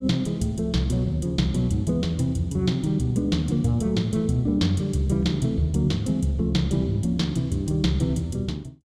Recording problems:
none

